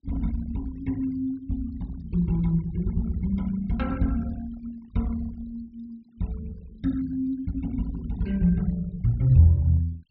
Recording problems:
treble cut off; nothing above 5.5 kHz
denoising artefacts; signal-to-artefact ratio 26 dB

